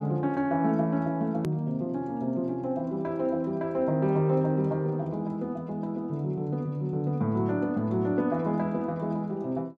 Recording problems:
click at an edit; at 1.5 s

